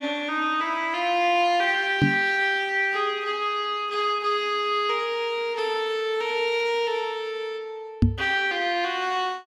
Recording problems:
knock on the microphone; at 2 s and at 8 s; peak +8 dB vs average level

